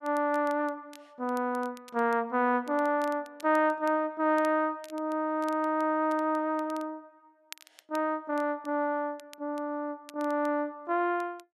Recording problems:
crackle; vinyl, SNR 25 dB

